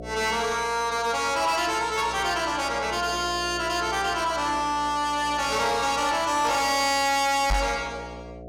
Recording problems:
distortion; soft clipping, signal-to-distortion ratio 10 dB
electrical hum; 60 Hz, harmonics up to 720 Hz, SNR 17 dB
knock on the microphone; at 7.5 s; peak +3 dB vs average level

